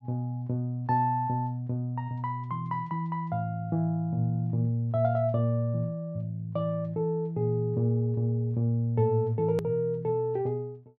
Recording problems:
hard cut with a click; at 9.5 s

